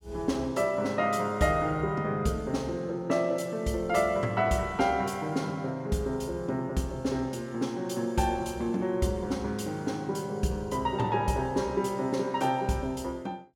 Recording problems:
none

